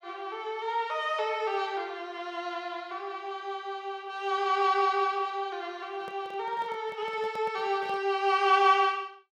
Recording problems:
microphone handling noise; from 6 to 8 s; peak -11 dB vs average level

